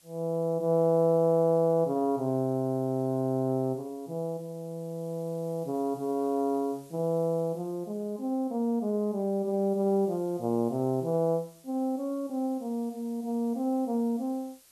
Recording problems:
background hiss; slope +1 dB per octave, SNR 28 dB

